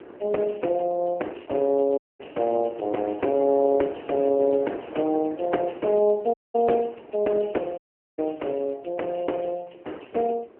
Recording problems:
telephone audio; 240 Hz to 3.3 kHz, AMR-NB
wind on the microphone; below 630 Hz, SNR 18 dB
audio cutting out; at 2 s, at 6.5 s and at 8 s

